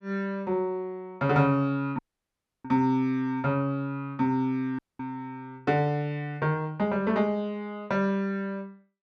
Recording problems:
audio cutting out; at 2 s for 0.5 s and at 5 s

